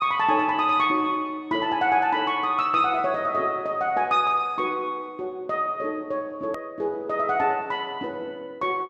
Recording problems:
click at an edit; at 6.5 s

